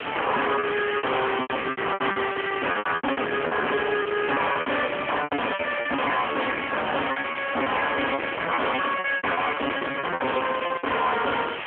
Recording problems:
telephone audio; 300 Hz to 3.2 kHz, AMR-NB
distortion; hard clipping, signal-to-distortion ratio 6 dB
hiss; SNR 9 dB
wind on the microphone; below 1.9 kHz, SNR 14 dB
lost packets; 19% of the sound replaced, filled with repeated pitch periods

